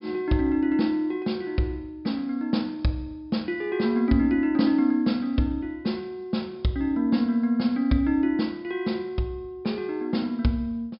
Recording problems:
low-pass filter; nothing above 5.5 kHz

